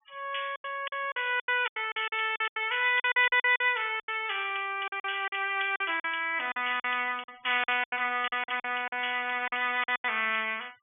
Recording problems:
treble cut off; nothing above 3.5 kHz
denoising artefacts; signal-to-artefact ratio 26 dB
lost packets; 15% of the sound replaced, filled with silence

